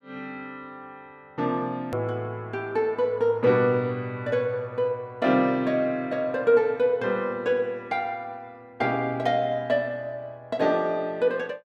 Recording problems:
click at an edit; at 2 s

